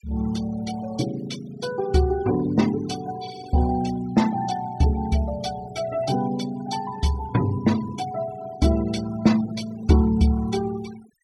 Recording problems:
denoising artefacts; signal-to-artefact ratio 18 dB

